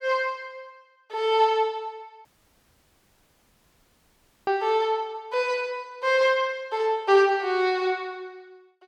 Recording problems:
dropout; at 2.5 s for 2 s

